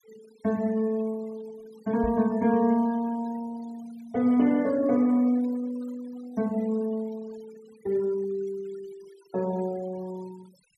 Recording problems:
noise reduction artefacts; signal-to-artefact ratio 23 dB
knock on the microphone; at 2 s; peak -4 dB vs average level

